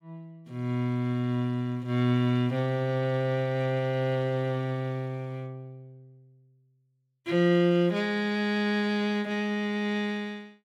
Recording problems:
none

